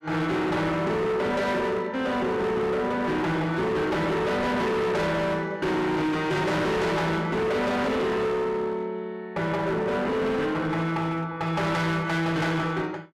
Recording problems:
distortion; hard clipping, signal-to-distortion ratio 7 dB

